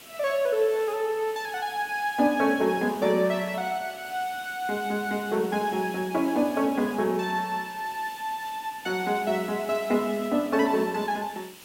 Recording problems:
background hiss; SNR 18 dB

